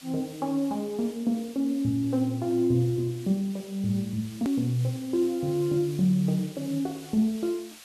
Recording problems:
background hiss; slope +1 dB per octave, SNR 20 dB
hard cut with a click; at 4.5 s

